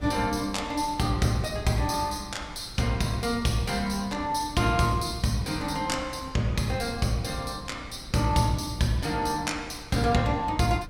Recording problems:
wind noise; below 190 Hz, SNR 18 dB

